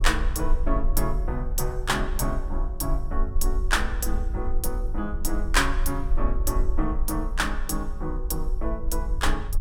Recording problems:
low-frequency rumble; below 44 Hz, strongest tone 20 Hz, SNR 1 dB

